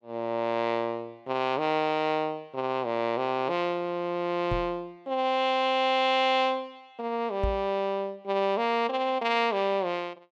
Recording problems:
knock on the microphone; at 4.5 s and at 7.5 s; peak +1 dB vs average level

